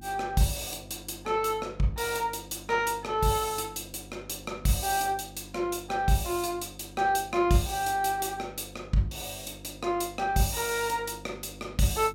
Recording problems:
hum; 50 Hz, harmonics up to 350 Hz, SNR 19 dB

